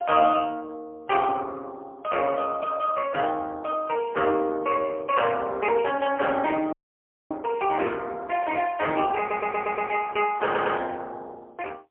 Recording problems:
phone line; 280 Hz to 2.8 kHz, AMR-NB, then MP3
audio cutting out; at 6.5 s for 0.5 s
stutter; at 9 s and at 10 s

